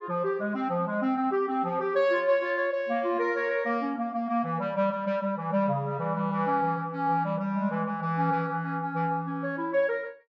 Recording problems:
treble missing; nothing above 8 kHz

